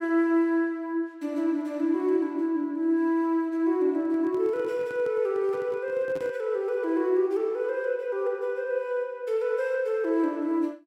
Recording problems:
handling noise; from 4 to 6.5 s; peak -10 dB vs average level

